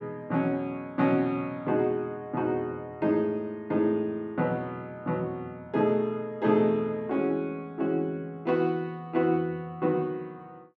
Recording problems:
none

